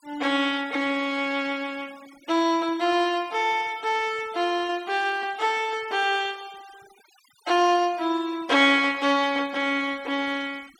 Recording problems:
denoising artefacts; signal-to-artefact ratio 23 dB

